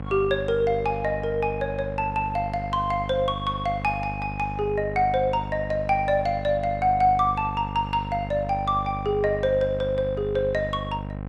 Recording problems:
electrical hum; 50 Hz, harmonics up to 1.4 kHz, SNR 9 dB

